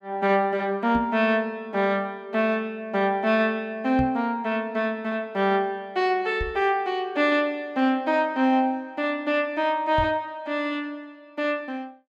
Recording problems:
microphone thump; 4 times, first at 1 s; peak -1 dB vs average level

